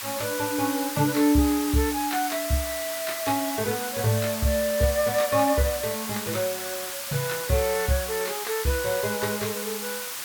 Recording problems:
background hiss; SNR 5 dB

